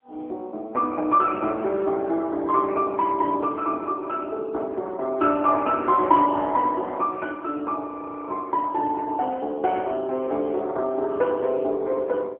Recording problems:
telephone audio; 260 Hz to 3 kHz, AMR-NB
frozen audio; at 8 s

